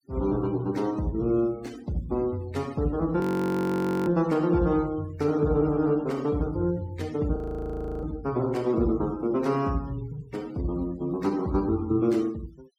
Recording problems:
noise reduction artefacts; signal-to-artefact ratio 24 dB
frozen audio; at 3 s for 1 s and at 7.5 s for 0.5 s

